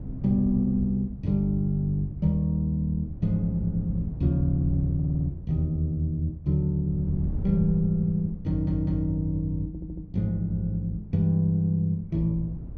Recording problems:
wind on the microphone; below 150 Hz, SNR 13 dB
audio stuttering; at 5 s, at 8.5 s and at 9.5 s

